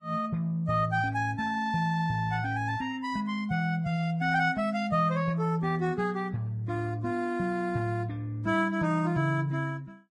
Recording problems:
lossy compression; Vorbis, log-spectral distance 2 dB

